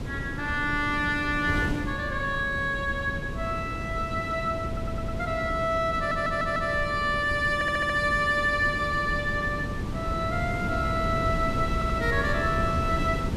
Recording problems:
wind on the microphone; below 280 Hz, SNR 6 dB
stutter; 4 times, first at 4.5 s

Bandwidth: 14.5 kHz